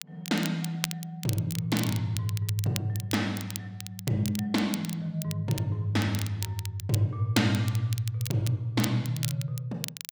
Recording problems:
crackle; vinyl, SNR 10 dB

